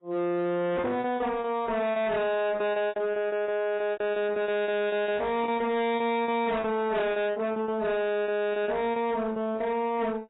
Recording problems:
lossy codec; AAC, log-spectral distance 2 dB, nothing above 3.3 kHz
distorted audio; hard clipping, signal-to-distortion ratio 6 dB
packet loss; 15% of the sound replaced, filled with repeated pitch periods

